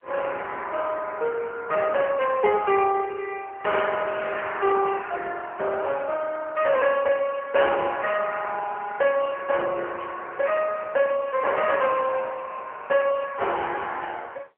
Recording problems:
phone line; 370 Hz to 3.1 kHz, AMR-NB, then MP3
distortion; soft clipping, signal-to-distortion ratio 13 dB
static burst; at 10 s; peak -14 dB vs average level

